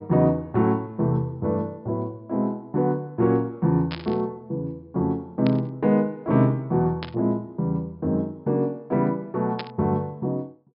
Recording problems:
low-pass filter; nothing above 5.5 kHz
static burst; 4 times, first at 4 s; peak -5 dB vs average level

